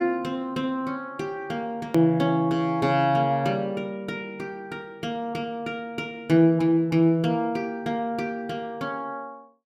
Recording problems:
click at an edit; at 2 s

